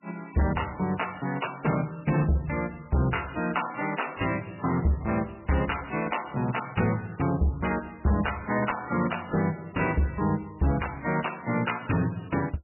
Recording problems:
lossy compression; MP3, log-spectral distance 9 dB, nothing above 2.9 kHz
distortion; hard clipping, signal-to-distortion ratio 11 dB

